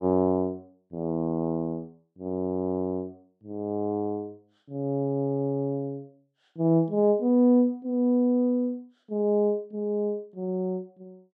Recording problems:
none

